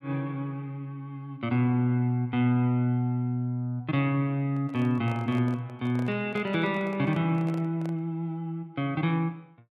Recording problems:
handling noise; from 4.5 to 8 s; peak -11 dB vs average level

